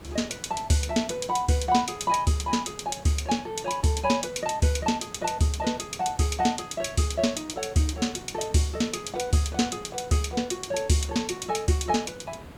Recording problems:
background hiss; slope -6 dB per octave, SNR 19 dB

